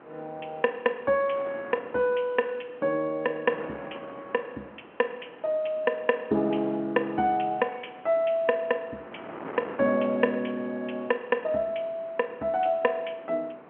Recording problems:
phone line; 220 Hz to 3.3 kHz, G.711
wind noise; below 1.2 kHz, SNR 18 dB

